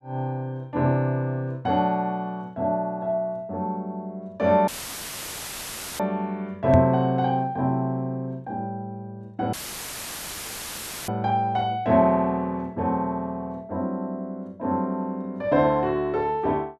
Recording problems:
audio cutting out; at 4.5 s for 1.5 s and at 9.5 s for 1.5 s; filled with static
microphone bump; at 6.5 s; peak +8 dB vs average level

